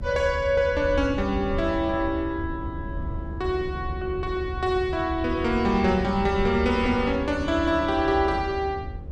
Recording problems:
mains hum; 50 Hz, harmonics up to 550 Hz, SNR 18 dB
rumble; below 94 Hz, SNR 9 dB

